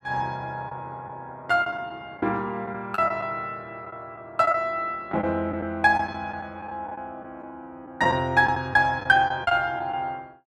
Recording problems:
lost packets; 6% of the sound replaced, filled with the last packet

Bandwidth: 15 kHz